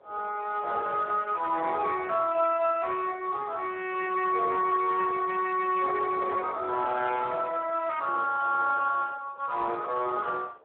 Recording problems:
telephone audio; 340 Hz to 3.7 kHz, Speex
wind noise; below 740 Hz, SNR 23 dB

